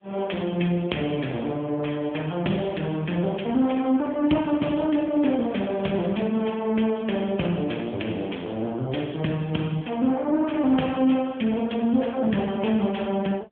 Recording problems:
telephone audio; 110 Hz to 3.5 kHz, AMR-NB

